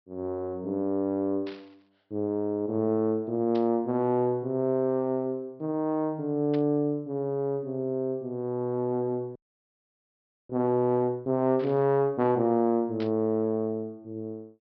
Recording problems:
treble cut off; nothing above 5.5 kHz
static burst; 5 times, first at 1.5 s; peak -12 dB vs average level
frozen audio; at 9.5 s for 1 s

